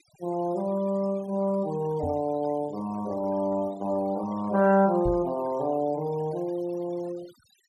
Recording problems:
noise reduction artefacts; signal-to-artefact ratio 22 dB
knock on the microphone; at 2 s and at 5 s; peak -2 dB vs average level

